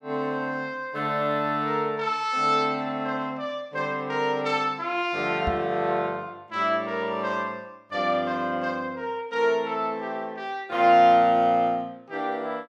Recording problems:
knock on the microphone; at 5.5 s; peak -2 dB vs average level

